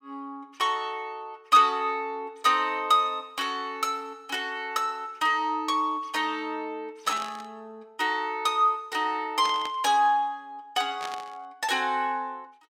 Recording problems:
burst of static; at 7 s, at 9.5 s and at 11 s; peak -6 dB vs average level

